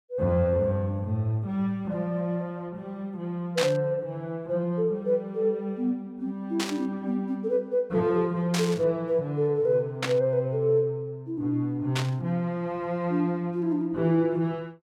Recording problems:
static burst; 5 times, first at 3.5 s; peak +3 dB vs average level

